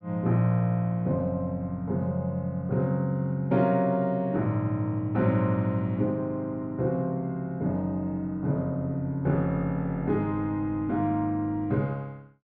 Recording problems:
none

